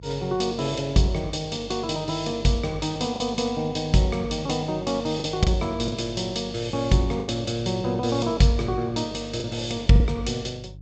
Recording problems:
treble cut off; nothing above 8 kHz
hum; 50 Hz, harmonics up to 350 Hz, SNR 18 dB
lost packets; 3% of the sound replaced, filled with the last packet

